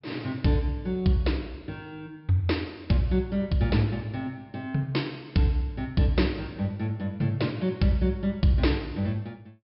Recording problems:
treble missing; nothing above 5.3 kHz

